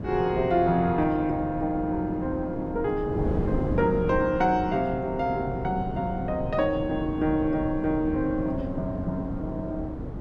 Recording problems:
wind on the microphone; below 320 Hz, SNR 7 dB

